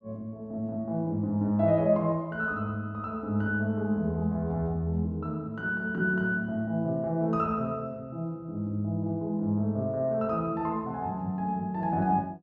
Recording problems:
none

